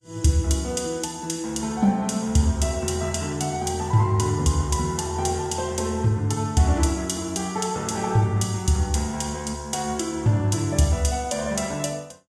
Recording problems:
lossy compression; Vorbis, log-spectral distance 3 dB

